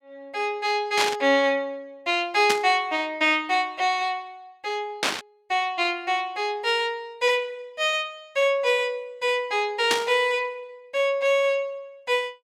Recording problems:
burst of static; 4 times, first at 1 s; peak +4 dB vs average level

